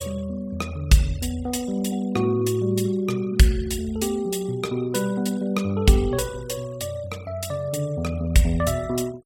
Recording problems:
denoising artefacts; signal-to-artefact ratio 22 dB

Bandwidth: 16.5 kHz